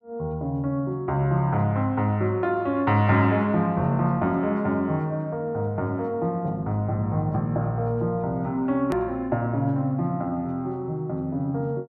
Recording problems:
hard cut with a click; at 9 s

